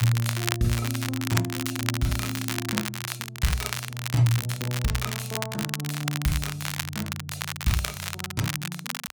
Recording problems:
crackle; vinyl, SNR 3 dB

